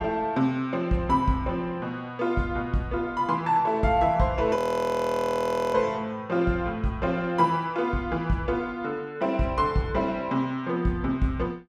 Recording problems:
frozen audio; at 4.5 s for 1 s

